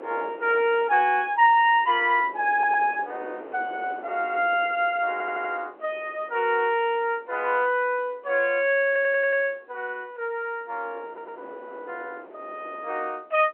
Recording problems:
phone line; 320 Hz to 3.2 kHz, G.711
wind on the microphone; below 760 Hz, SNR 20 dB
stutter; 4 times, first at 2.5 s

